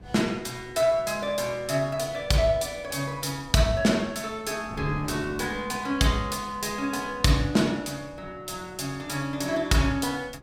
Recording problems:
wind on the microphone; below 340 Hz, SNR 19 dB

